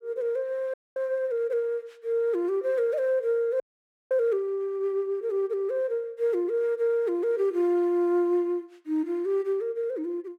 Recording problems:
audio freezing; at 0.5 s and at 3.5 s for 0.5 s

